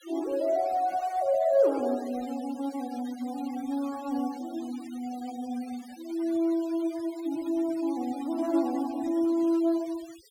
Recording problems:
noise reduction artefacts; signal-to-artefact ratio 20 dB

